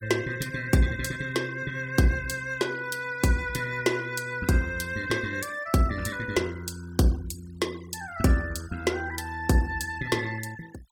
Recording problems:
noise reduction artefacts; signal-to-artefact ratio 20 dB

